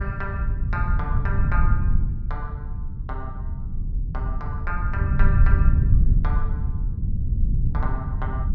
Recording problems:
rumble; below 88 Hz, SNR -9 dB

